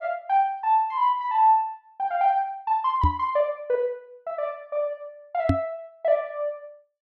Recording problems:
microphone bump; at 3 s and at 5.5 s; peak +6 dB vs average level

